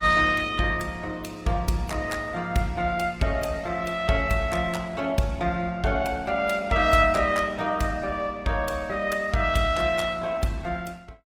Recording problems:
lossy codec; Opus, log-spectral distance 3 dB, nothing above 19 kHz

